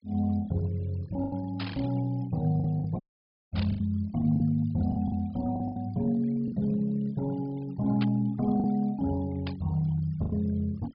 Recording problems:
treble cut off; nothing above 5.5 kHz
noise reduction artefacts; signal-to-artefact ratio 23 dB
packet loss; 6% of the sound replaced, filled with the last packet
burst of static; 4 times, first at 1.5 s; peak -5 dB vs average level
audio cutting out; at 3 s for 0.5 s

